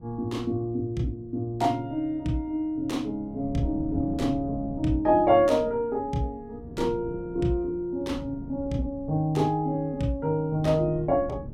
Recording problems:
wind noise; below 230 Hz, SNR 15 dB

